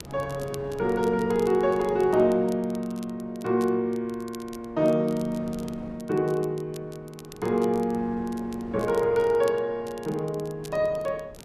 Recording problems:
wind noise; below 490 Hz, SNR 20 dB
crackle; vinyl, SNR 23 dB

